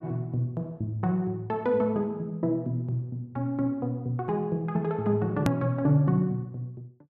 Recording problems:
hard cut with a click; at 5.5 s

